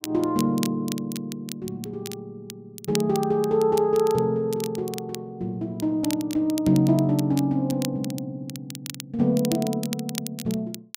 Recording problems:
crackle; vinyl, SNR 13 dB

